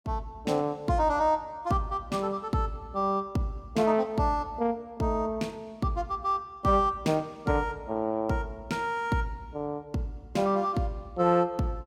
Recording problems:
none

